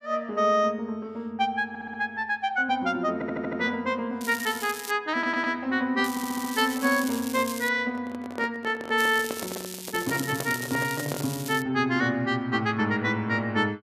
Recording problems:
stutter; 4 times, first at 1.5 s
crackle; at 4 s, from 6 to 7.5 s and from 9 to 12 s; loose cable, SNR 10 dB
microphone handling noise; from 8 to 11 s; peak -3 dB vs average level

